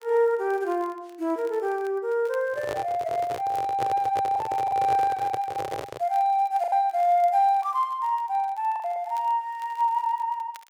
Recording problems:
crackle; vinyl, SNR 30 dB
packet loss; 3% of the sound replaced, filled with the last packet
handling noise; from 2.5 to 6 s; peak -3 dB vs average level

